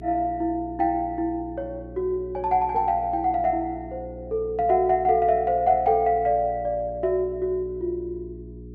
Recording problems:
hum; 60 Hz, harmonics up to 420 Hz, SNR 17 dB

